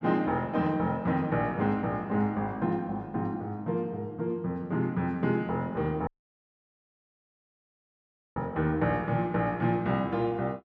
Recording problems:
dropout; at 6 s for 2.5 s

